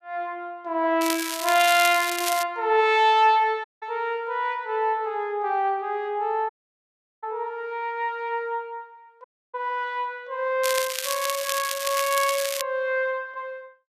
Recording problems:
crackling; from 1 to 2.5 s and from 11 to 13 s; loose cable, SNR 5 dB
dropout; at 3.5 s, at 6.5 s for 0.5 s and at 9 s

